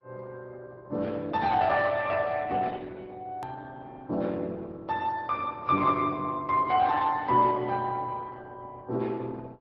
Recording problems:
low-pass filter; nothing above 5.5 kHz
lossy compression; AAC, then Opus, log-spectral distance 3 dB
edit click; at 3.5 s

